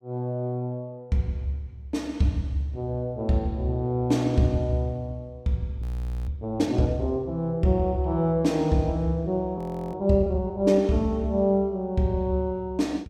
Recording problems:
frozen audio; at 6 s and at 9.5 s

